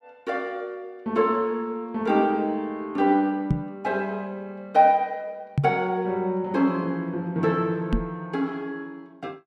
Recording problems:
knock on the microphone; at 3.5 s, at 5.5 s and at 8 s; peak +6 dB vs average level

